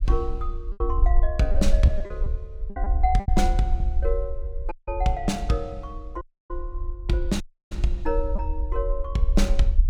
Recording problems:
rumble; below 54 Hz, SNR 0 dB
packet loss; 5% of the sound replaced, filled with repeated pitch periods
audio cutting out; at 4.5 s, at 6 s and at 7.5 s

